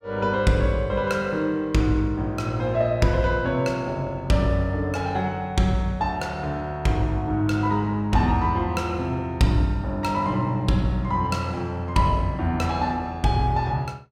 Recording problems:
none

